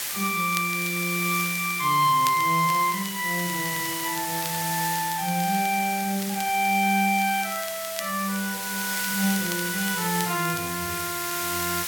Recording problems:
hiss; slope +2 dB per octave, SNR 4 dB
crackling; vinyl, SNR 16 dB

